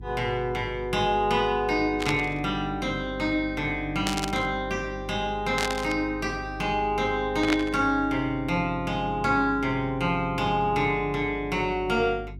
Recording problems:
hum; 50 Hz, harmonics up to 400 Hz, SNR 15 dB
static burst; 4 times, first at 2 s; peak +2 dB vs average level

